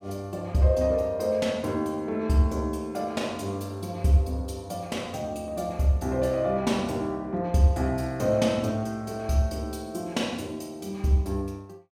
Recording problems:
none

